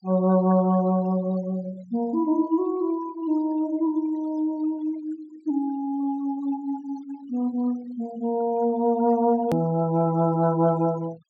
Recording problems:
treble cut off; nothing above 8 kHz
denoising artefacts; signal-to-artefact ratio 23 dB
edit click; at 9.5 s

